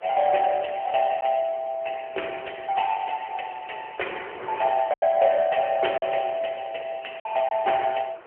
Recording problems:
telephone audio; 320 Hz to 3.1 kHz, AMR-NB
wind on the microphone; below 1.4 kHz, SNR 20 dB
lost packets; 2% of the sound replaced, filled with silence

